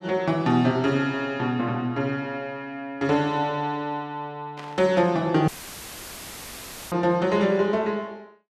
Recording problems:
burst of static; at 4.5 s; peak -12 dB vs average level
dropout; at 5.5 s for 1.5 s; filled with static

